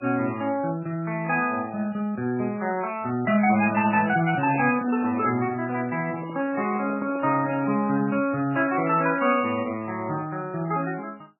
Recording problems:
codec artefacts; MP3, log-spectral distance 3 dB, nothing above 2.7 kHz
handling noise; from 4 to 7.5 s; peak -8 dB vs average level

